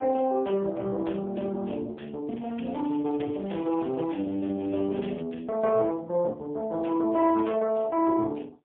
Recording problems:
phone line; 220 Hz to 3.4 kHz, AMR-NB, then MP3
crackling; from 2.5 to 5 s and at 7 s; loose cable, SNR 26 dB

